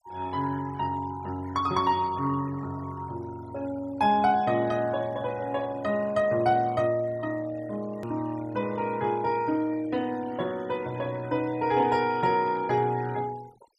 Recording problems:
denoising artefacts; signal-to-artefact ratio 21 dB
click at an edit; at 8 s

